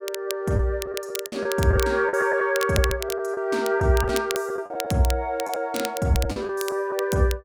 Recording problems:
crackle; vinyl, SNR 11 dB
lost packets; 8% of the sound replaced, filled with the last packet

